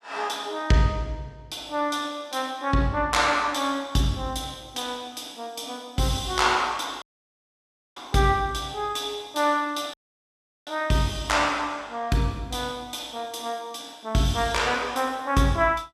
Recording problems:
dropout; at 7 s for 1 s and at 10 s for 0.5 s

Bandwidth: 14.5 kHz